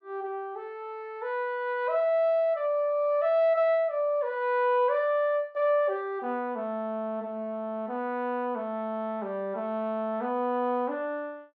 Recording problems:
none

